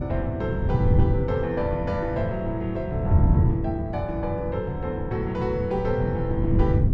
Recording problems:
wind noise; below 150 Hz, SNR -1 dB

